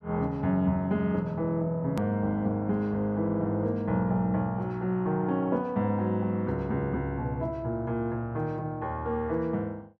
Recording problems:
click at an edit; at 2 s

